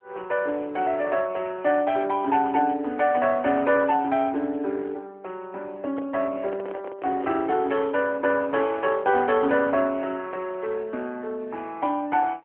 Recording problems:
telephone audio; 240 Hz to 3.2 kHz, AMR-NB
microphone handling noise; from 6 to 7.5 s; peak -8 dB vs average level

